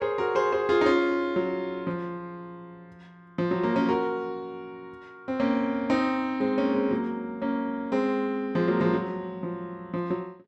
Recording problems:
none

